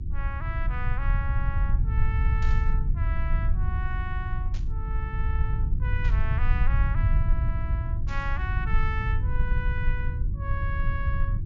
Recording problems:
treble cut off; nothing above 7.3 kHz
hum; 50 Hz, harmonics up to 350 Hz, SNR 11 dB
rumble; below 78 Hz, SNR -9 dB
burst of static; 4 times, first at 2.5 s; peak -5 dB vs average level

